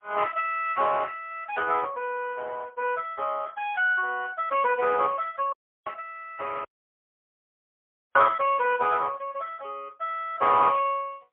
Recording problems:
phone line; 370 Hz to 3.3 kHz, AMR-NB, then MP3
dropout; at 5.5 s and at 6.5 s for 1.5 s

